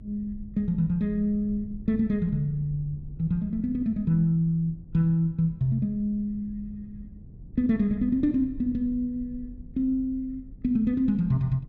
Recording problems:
rumble; below 110 Hz, SNR 18 dB

